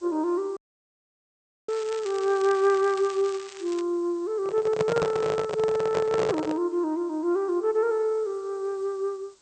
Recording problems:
lossy compression; MP2, log-spectral distance 3 dB
background hiss; SNR 30 dB
audio cutting out; at 0.5 s for 1 s
crackling; from 1.5 to 4 s; loose cable, SNR 17 dB
microphone handling noise; from 4.5 to 6.5 s; peak +2 dB vs average level

